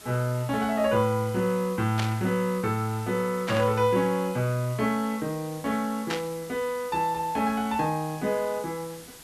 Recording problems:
hiss; slope -1 dB per octave, SNR 18 dB
burst of static; at 2 s, at 3.5 s and at 6 s; peak 0 dB vs average level

